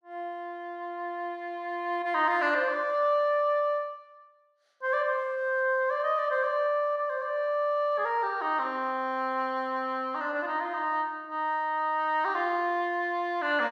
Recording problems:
none

